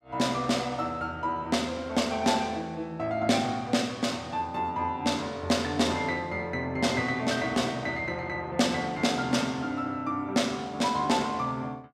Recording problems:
none

